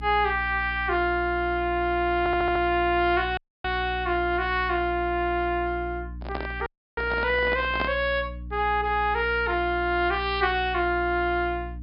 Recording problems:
treble cut off; nothing above 5.5 kHz
electrical hum; 60 Hz, harmonics up to 300 Hz, SNR 13 dB
audio stuttering; at 2 s
dropout; at 3.5 s and at 6.5 s
microphone handling noise; from 6 to 8 s; peak -1 dB vs average level

